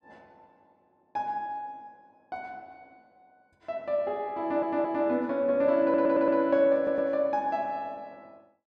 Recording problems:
stutter; at 4.5 s, at 6 s and at 7 s

